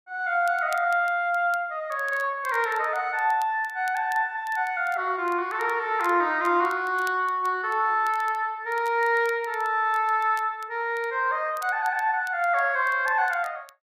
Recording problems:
crackling; vinyl, SNR 26 dB

